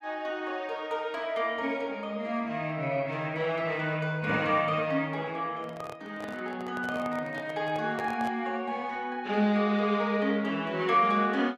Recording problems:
handling noise; from 5.5 to 8.5 s; peak -5 dB vs average level

